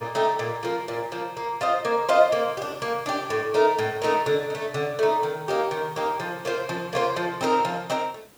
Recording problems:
hiss; slope -4 dB per octave, SNR 26 dB

